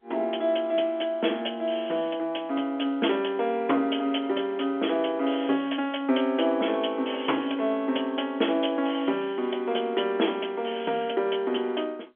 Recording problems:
phone line; 240 Hz to 3.4 kHz, G.711

